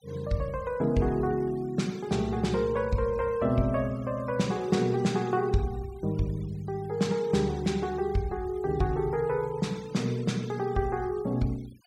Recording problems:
denoising artefacts; signal-to-artefact ratio 24 dB

